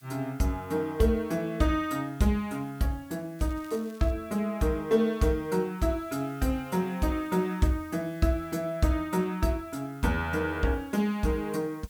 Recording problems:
hiss; SNR 27 dB
crackle; at 3.5 s; loose cable, SNR 26 dB

